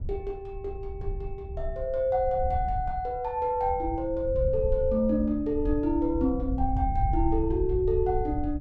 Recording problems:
wind noise; below 82 Hz, SNR 7 dB

